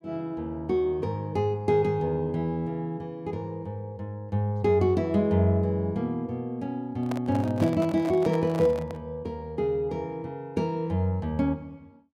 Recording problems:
microphone handling noise; from 7 to 9 s; peak -2 dB vs average level

